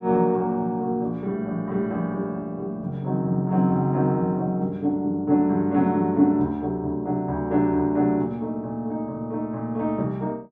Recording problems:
none

